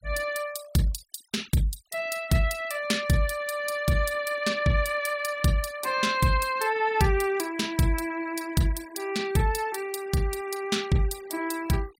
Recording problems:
denoising artefacts; signal-to-artefact ratio 20 dB

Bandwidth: 16 kHz